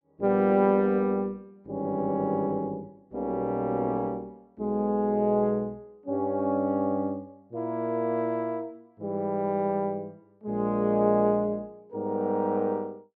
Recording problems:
none

